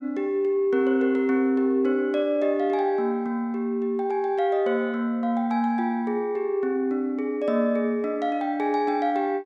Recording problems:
none

